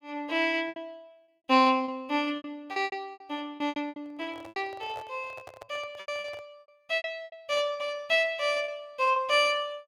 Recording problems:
packet loss; 12% of the sound replaced, filled with repeated pitch periods
microphone handling noise; from 4 to 6.5 s; peak -11 dB vs average level

